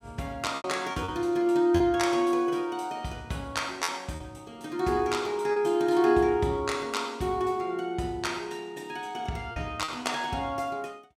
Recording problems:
packet loss; 4% of the sound replaced, filled with repeated pitch periods

